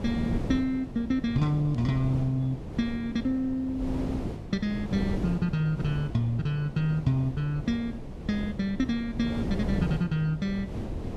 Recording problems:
wind noise; below 310 Hz, SNR 7 dB

